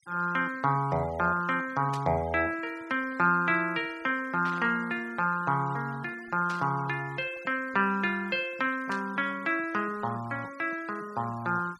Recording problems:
noise reduction artefacts; signal-to-artefact ratio 22 dB
static burst; 4 times, first at 2 s; peak -9 dB vs average level

